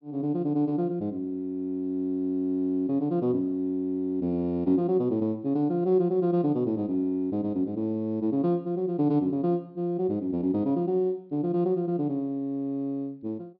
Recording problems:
low-pass filter; nothing above 5.5 kHz

